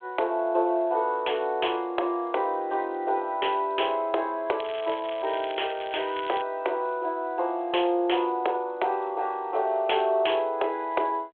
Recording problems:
phone line; 320 Hz to 3.4 kHz, G.726
crackling; from 4.5 to 6.5 s; loose cable, SNR 15 dB

